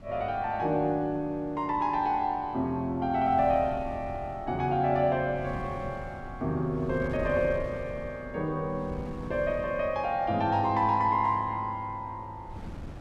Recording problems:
wind noise; below 230 Hz, SNR 16 dB

